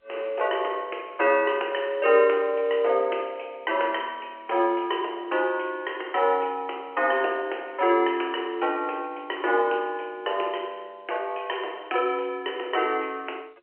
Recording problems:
phone line; 320 Hz to 3.2 kHz, G.711

